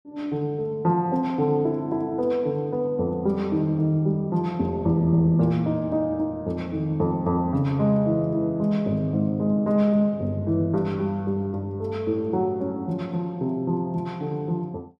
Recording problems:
none

